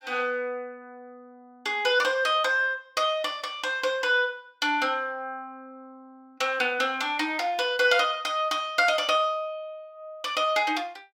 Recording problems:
none

